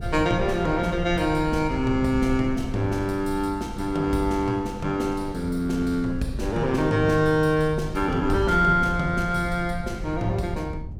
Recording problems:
wind noise; below 100 Hz, SNR 12 dB

